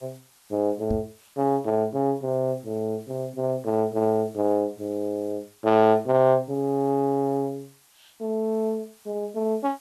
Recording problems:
background hiss; SNR 29 dB
microphone thump; at 1 s; peak -1 dB vs average level

